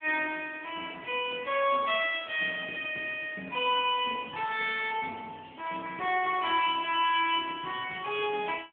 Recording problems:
telephone audio; 190 Hz to 3.4 kHz, AMR-NB

